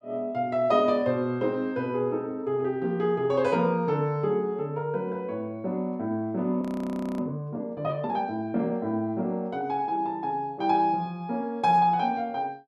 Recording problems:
frozen audio; at 6.5 s for 0.5 s

